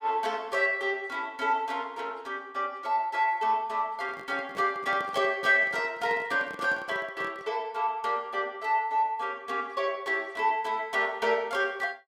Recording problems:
handling noise; from 4 to 7.5 s; peak -10 dB vs average level

